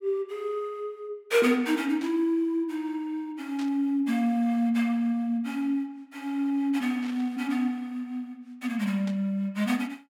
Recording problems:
static burst; 4 times, first at 2 s; peak -11 dB vs average level

